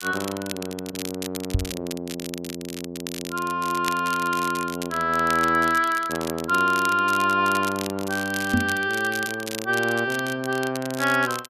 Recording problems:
crackle; vinyl, SNR 12 dB
microphone bump; at 1.5 s and at 8.5 s; peak +6 dB vs average level

